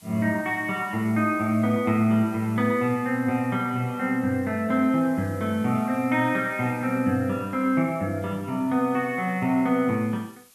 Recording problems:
hiss; SNR 27 dB

